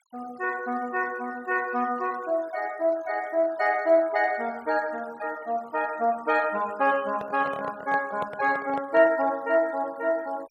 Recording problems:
denoising artefacts; signal-to-artefact ratio 23 dB
handling noise; from 7 to 9.5 s; peak -5 dB vs average level

